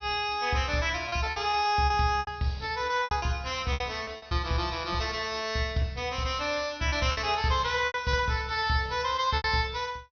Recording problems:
treble cut off; nothing above 6.1 kHz
lost packets; 9% of the sound replaced, filled with repeated pitch periods

